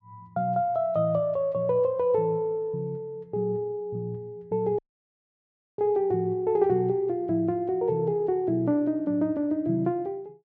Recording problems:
audio cutting out; at 5 s for 1 s

